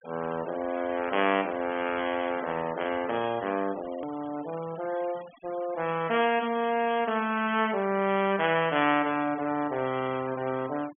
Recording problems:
treble cut off; nothing above 3.4 kHz
denoising artefacts; signal-to-artefact ratio 17 dB
click at an edit; at 4 s

